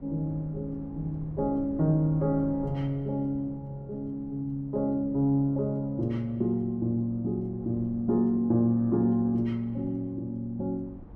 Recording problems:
wind on the microphone; below 200 Hz, SNR 19 dB

